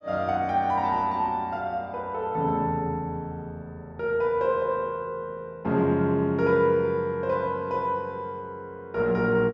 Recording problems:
none

